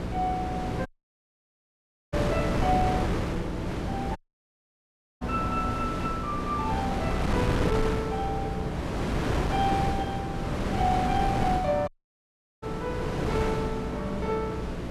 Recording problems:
electrical hum; 60 Hz, harmonics up to 660 Hz, SNR 7 dB
wind on the microphone; below 640 Hz, SNR 0 dB
dropout; at 1 s for 1.5 s, at 4 s for 1 s and at 12 s for 0.5 s

